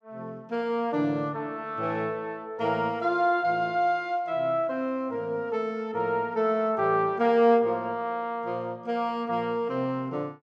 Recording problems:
none

